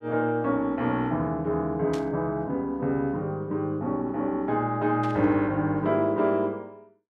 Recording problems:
burst of static; at 2 s and at 5 s; peak -10 dB vs average level

